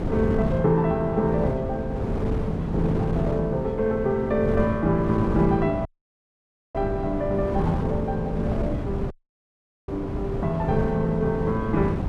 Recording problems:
wind on the microphone; below 300 Hz, SNR 4 dB
dropout; at 6 s for 1 s and at 9 s for 1 s

